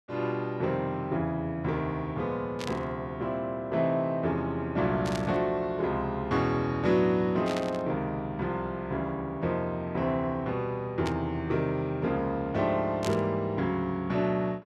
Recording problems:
static burst; 5 times, first at 2.5 s; peak -3 dB vs average level

